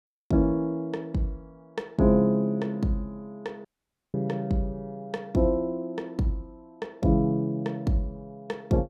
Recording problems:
dropout; at 3.5 s

